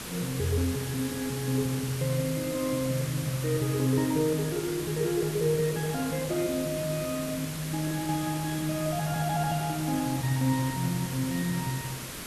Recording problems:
background hiss; slope -2 dB per octave, SNR 8 dB

